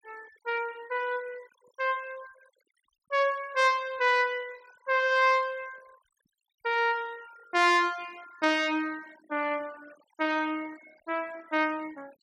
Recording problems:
denoising artefacts; signal-to-artefact ratio 24 dB

